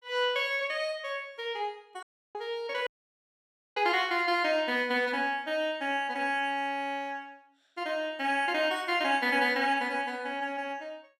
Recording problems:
audio cutting out; at 2 s and at 3 s for 1 s

